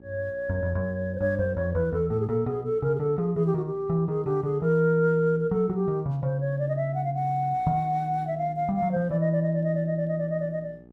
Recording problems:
hum; 60 Hz, harmonics up to 900 Hz, SNR 25 dB

